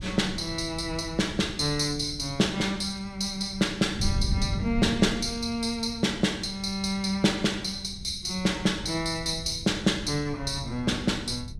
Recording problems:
wind noise; below 130 Hz, SNR 11 dB

